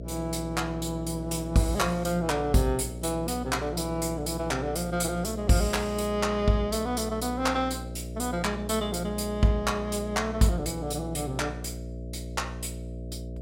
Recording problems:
hum; 60 Hz, harmonics up to 660 Hz, SNR 9 dB

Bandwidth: 16.5 kHz